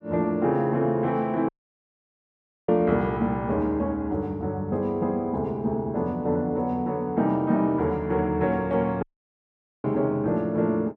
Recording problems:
audio cutting out; at 1.5 s for 1 s and at 9 s for 1 s

